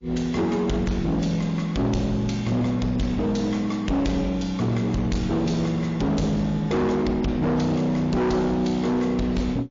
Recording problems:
codec artefacts; MP3, log-spectral distance 2 dB, nothing above 6.3 kHz
distorted audio; hard clipping, uneven, signal-to-distortion ratio 7 dB

